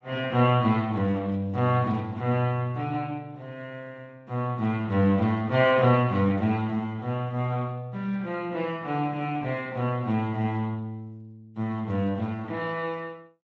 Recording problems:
lossy codec; Speex, log-spectral distance 2 dB

